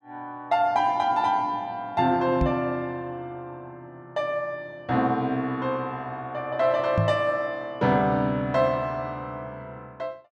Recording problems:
microphone thump; at 2.5 s and at 7 s; peak +5 dB vs average level

